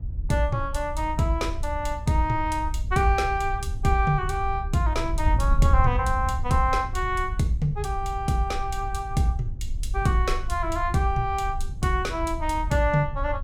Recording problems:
wind noise; below 72 Hz, SNR 5 dB

